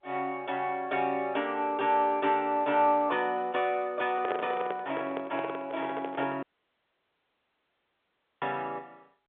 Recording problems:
phone line; 280 Hz to 3.6 kHz, G.711
handling noise; from 4 to 6.5 s; peak +1 dB vs average level
audio cutting out; at 6.5 s for 2 s

